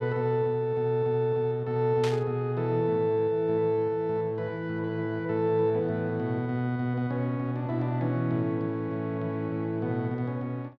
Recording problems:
static burst; at 2 s; peak -4 dB vs average level

